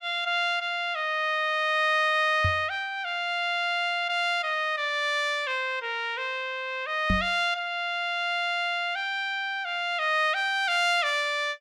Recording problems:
microphone bump; at 2.5 s and at 7 s; peak +2 dB vs average level

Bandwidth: 15 kHz